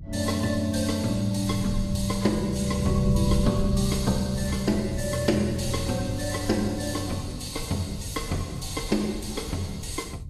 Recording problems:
lossy codec; Vorbis, log-spectral distance 4 dB, nothing above 12.3 kHz
wind noise; below 130 Hz, SNR 9 dB

